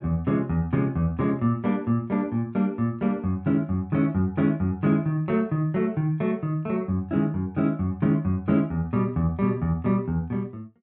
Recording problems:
none

